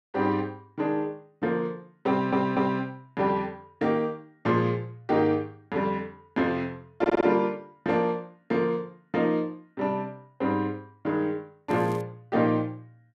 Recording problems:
audio stuttering; at 2 s and at 7 s
crackle; at 12 s; loose cable, SNR 27 dB

